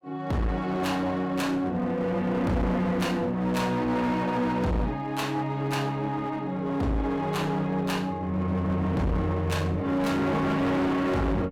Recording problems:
distorted audio; hard clipping, uneven, signal-to-distortion ratio 6 dB

